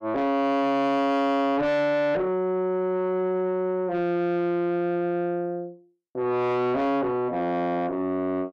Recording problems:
distorted audio; soft clipping, signal-to-distortion ratio 7 dB

